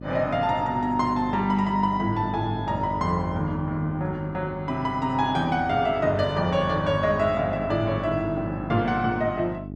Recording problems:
hum; 50 Hz, harmonics up to 750 Hz, SNR 11 dB

